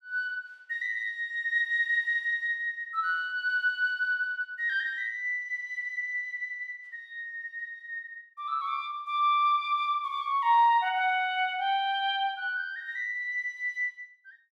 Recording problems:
none

